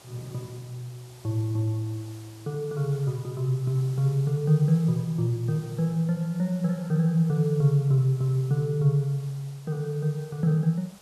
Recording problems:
hiss; slope -2 dB per octave, SNR 25 dB

